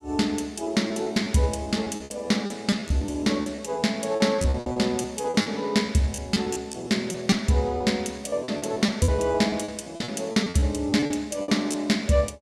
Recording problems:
lost packets; 14% of the sound replaced, filled with repeated pitch periods

